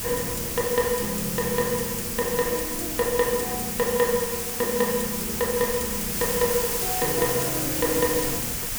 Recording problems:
background hiss; slope 0 dB per octave, SNR 0 dB
wind noise; below 200 Hz, SNR 14 dB

